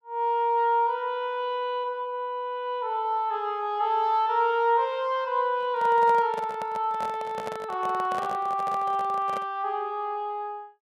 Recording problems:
handling noise; from 5.5 to 9.5 s; peak -6 dB vs average level

